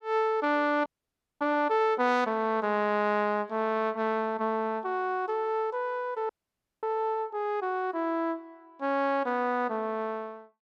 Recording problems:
audio freezing; at 1 s for 0.5 s and at 6.5 s for 0.5 s

